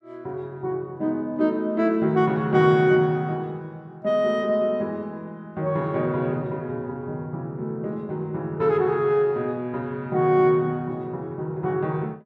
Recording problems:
none

